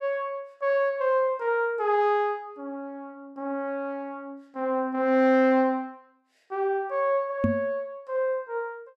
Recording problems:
knock on the microphone; at 7.5 s; peak +5 dB vs average level

